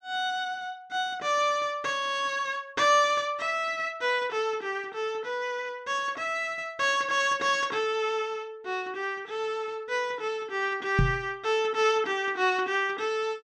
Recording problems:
microphone thump; at 11 s; peak +6 dB vs average level

